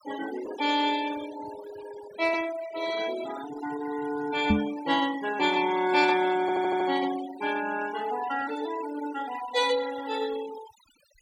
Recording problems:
denoising artefacts; signal-to-artefact ratio 13 dB
knock on the microphone; at 4.5 s; peak +7 dB vs average level
audio stuttering; at 6.5 s

